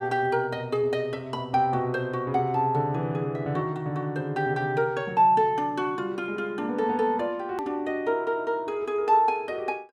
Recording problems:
hard cut with a click; at 7.5 s

